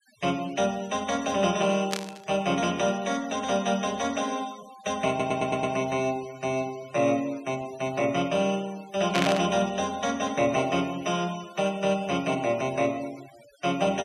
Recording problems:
noise reduction artefacts; signal-to-artefact ratio 20 dB
static burst; at 2 s and at 9 s; peak +3 dB vs average level
stutter; at 5 s

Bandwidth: 14 kHz